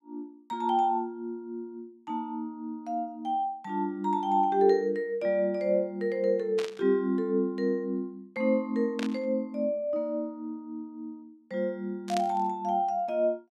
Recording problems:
static burst; at 6.5 s, at 9 s and at 12 s; peak -3 dB vs average level

